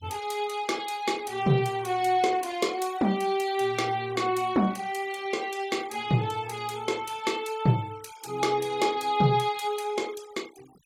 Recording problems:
noise reduction artefacts; signal-to-artefact ratio 21 dB

